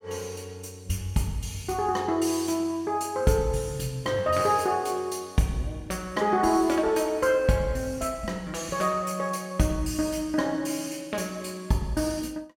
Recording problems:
none

